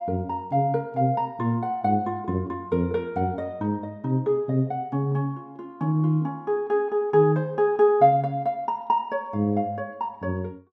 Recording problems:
none

